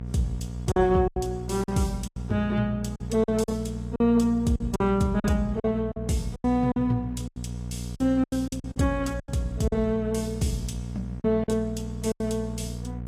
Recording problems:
codec artefacts; AAC, log-spectral distance 2 dB
hum; 60 Hz, harmonics up to 660 Hz, SNR 9 dB
lost packets; 11% of the sound replaced, filled with silence

